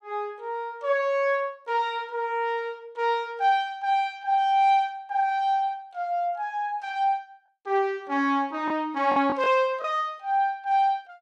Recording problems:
packet loss; 1.1% of the sound replaced, filled with the last packet

